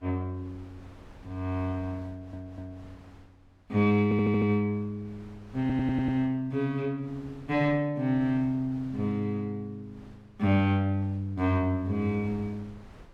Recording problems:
wind noise; below 620 Hz, SNR 24 dB
audio stuttering; at 2 s, at 4 s and at 5.5 s

